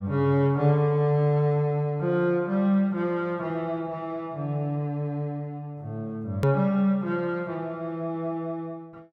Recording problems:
edit click; at 6.5 s

